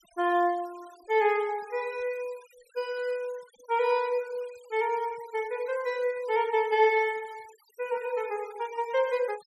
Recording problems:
denoising artefacts; signal-to-artefact ratio 23 dB

